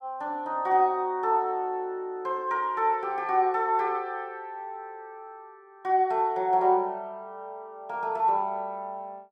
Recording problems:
none

